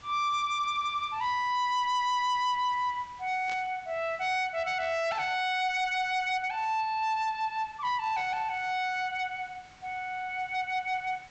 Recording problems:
treble missing; nothing above 8 kHz
distortion; hard clipping, signal-to-distortion ratio 11 dB
background hiss; SNR 26 dB
burst of static; at 3.5 s; peak -10 dB vs average level

